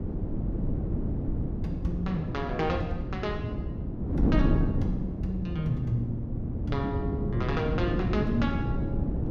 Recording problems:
wind on the microphone; below 240 Hz, SNR -2 dB

